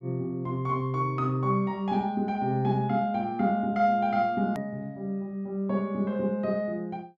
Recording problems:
click at an edit; at 4.5 s

